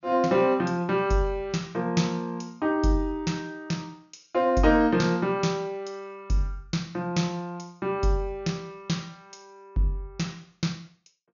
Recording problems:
treble cut off; nothing above 6.9 kHz

